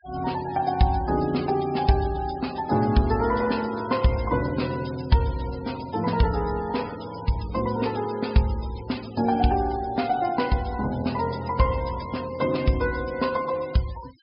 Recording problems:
low-pass filter; nothing above 5.5 kHz
denoising artefacts; signal-to-artefact ratio 18 dB

